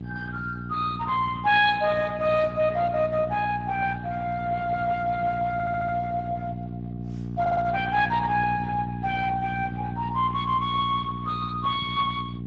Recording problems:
lossy codec; Speex, log-spectral distance 3 dB
electrical hum; 60 Hz, harmonics up to 480 Hz, SNR 8 dB
stutter; at 5.5 s and at 7.5 s

